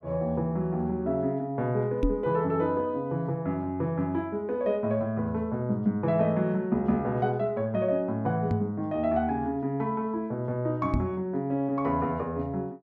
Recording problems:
microphone bump; at 2 s, at 8.5 s and at 11 s; peak +5 dB vs average level

